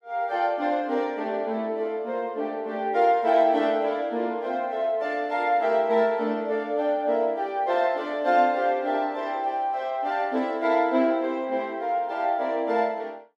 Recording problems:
none

